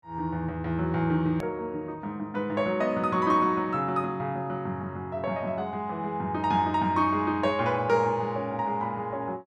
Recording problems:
hard cut with a click; at 1.5 s

